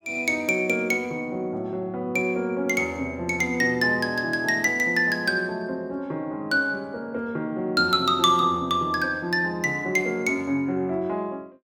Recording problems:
none

